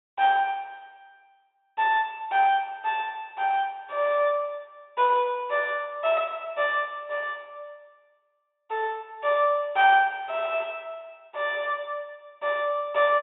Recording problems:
treble missing; nothing above 4 kHz

